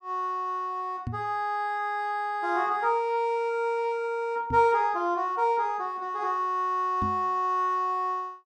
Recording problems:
microphone bump; at 1 s, at 4.5 s and at 7 s; peak -2 dB vs average level

